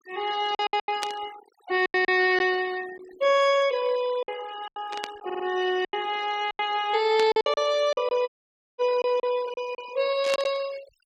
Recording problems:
denoising artefacts; signal-to-artefact ratio 18 dB
lost packets; 9% of the sound replaced, filled with silence
static burst; 4 times, first at 1 s; peak -2 dB vs average level
stutter; at 5.5 s
dropout; at 8.5 s for 0.5 s

